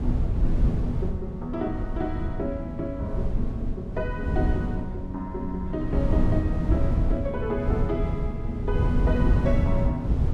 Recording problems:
wind on the microphone; below 130 Hz, SNR -3 dB

